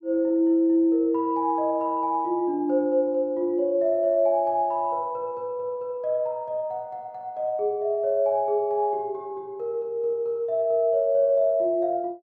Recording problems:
none

